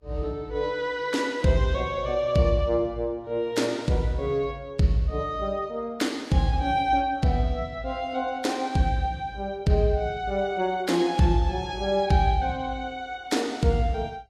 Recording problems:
lossy compression; Vorbis, log-spectral distance 2 dB, nothing above 13.8 kHz

